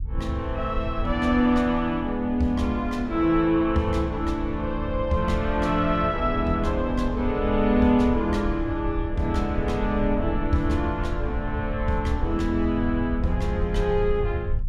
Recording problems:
low-frequency rumble; below 86 Hz, SNR 8 dB

